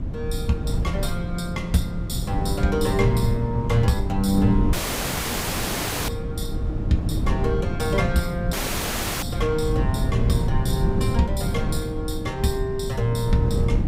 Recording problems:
wind on the microphone; below 160 Hz, SNR 1 dB
audio cutting out; at 4.5 s for 1.5 s and at 8.5 s for 0.5 s

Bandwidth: 15.5 kHz